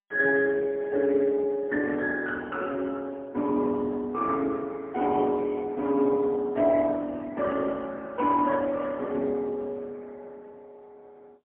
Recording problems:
telephone audio; 220 Hz to 3 kHz, AMR-NB, then MP3

